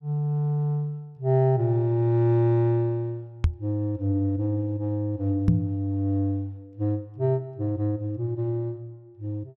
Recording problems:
microphone bump; at 3.5 s and at 5.5 s; peak +8 dB vs average level

